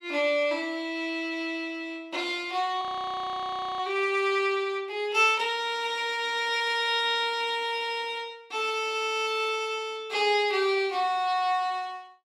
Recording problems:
frozen audio; at 3 s for 1 s

